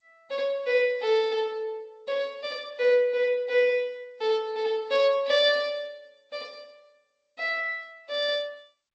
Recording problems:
lossy compression; MP3, then G.722, log-spectral distance 2 dB

